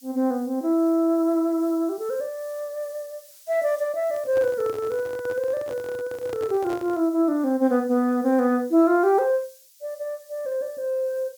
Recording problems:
background hiss; SNR 26 dB
microphone handling noise; from 4 to 7 s; peak -8 dB vs average level

